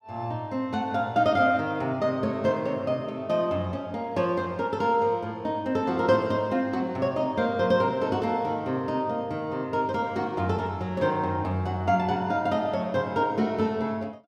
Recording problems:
none

